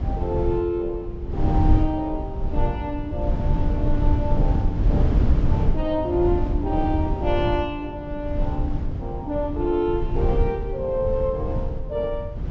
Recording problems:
treble missing; nothing above 8 kHz
rumble; below 110 Hz, SNR -1 dB

